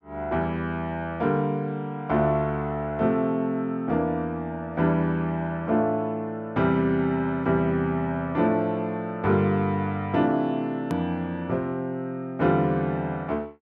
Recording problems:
click at an edit; at 11 s

